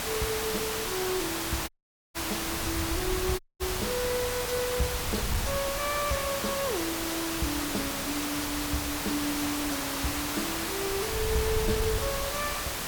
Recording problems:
distortion; soft clipping, signal-to-distortion ratio 2 dB
background hiss; SNR 2 dB
wind on the microphone; below 120 Hz, SNR 8 dB
dropout; at 1.5 s and at 3.5 s

